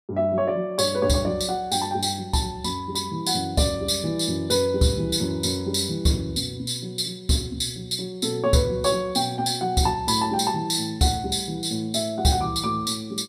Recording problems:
none

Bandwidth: 15 kHz